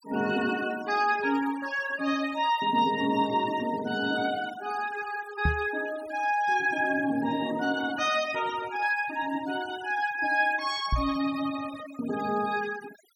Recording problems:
denoising artefacts; signal-to-artefact ratio 16 dB
microphone bump; at 5.5 s and at 11 s; peak +4 dB vs average level

